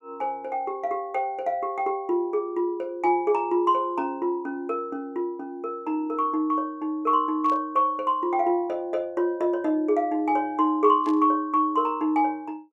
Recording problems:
burst of static; at 7.5 s and at 11 s; peak -16 dB vs average level

